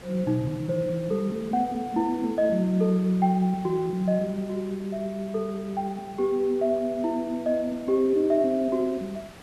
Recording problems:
background hiss; slope -4 dB per octave, SNR 20 dB

